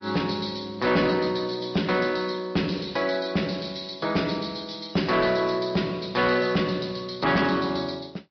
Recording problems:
treble cut off; nothing above 5 kHz
codec artefacts; MP3, log-spectral distance 5 dB
distorted audio; soft clipping, signal-to-distortion ratio 11 dB

